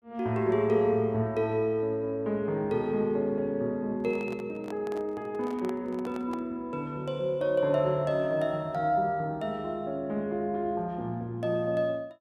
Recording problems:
handling noise; from 4 to 6.5 s; peak -9 dB vs average level

